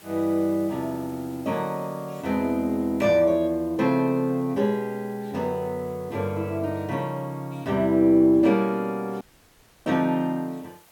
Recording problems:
background hiss; slope -2 dB per octave, SNR 27 dB
dropout; at 9 s for 0.5 s

